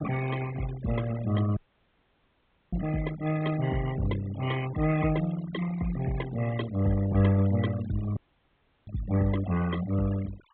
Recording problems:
low-pass filter; nothing above 4 kHz
denoising artefacts; signal-to-artefact ratio 13 dB
audio cutting out; at 1.5 s for 1 s and at 8 s for 0.5 s

